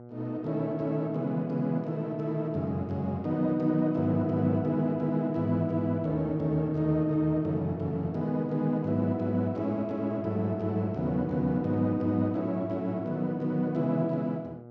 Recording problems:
hum; 60 Hz, harmonics up to 1.3 kHz, SNR 19 dB

